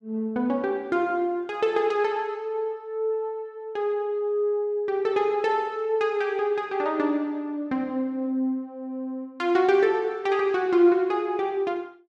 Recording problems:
none

